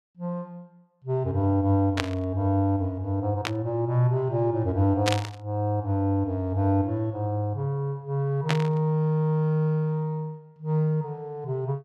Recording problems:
static burst; 4 times, first at 2 s; peak +4 dB vs average level

